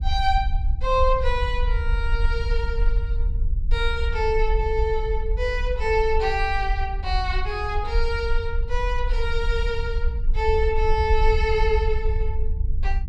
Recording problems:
rumble; below 56 Hz, SNR 1 dB

